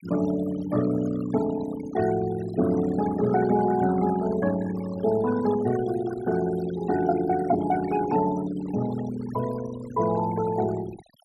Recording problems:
noise reduction artefacts; signal-to-artefact ratio 14 dB

